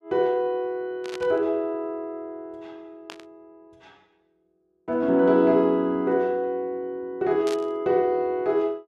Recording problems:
burst of static; at 1 s, at 3 s and at 7.5 s; peak -9 dB vs average level

